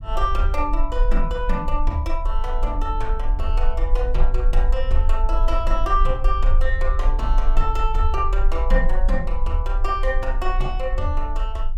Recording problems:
low-frequency rumble; below 38 Hz, strongest tone 24 Hz, SNR -2 dB

